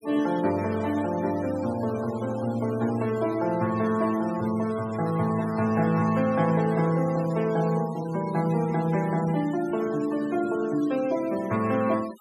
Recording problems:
noise reduction artefacts; signal-to-artefact ratio 18 dB

